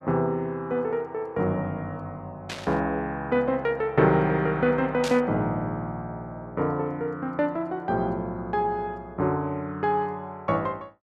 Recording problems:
static burst; at 2.5 s and at 5 s; peak -2 dB vs average level

